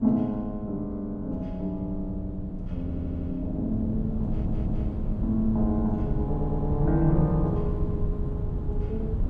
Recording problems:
wind noise; below 130 Hz, SNR 3 dB
stutter; at 3 s, at 4.5 s and at 6.5 s

